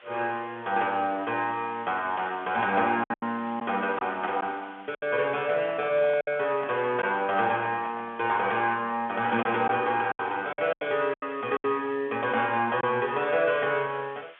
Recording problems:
phone line; 300 Hz to 3.3 kHz, G.711
background hiss; SNR 24 dB
lost packets; 5% of the sound replaced, filled with silence
microphone handling noise; from 5.5 to 8.5 s; peak -9 dB vs average level

